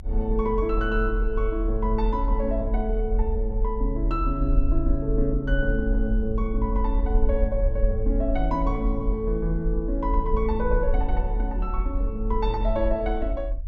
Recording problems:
low-frequency rumble; below 46 Hz, strongest tone 40 Hz, SNR 0 dB

